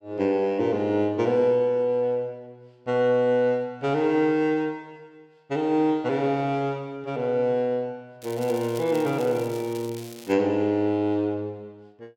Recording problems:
crackle; from 8 to 10 s; loose cable, SNR 20 dB

